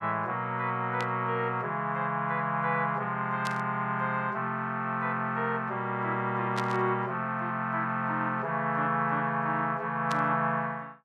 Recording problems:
burst of static; 4 times, first at 1 s; peak -4 dB vs average level

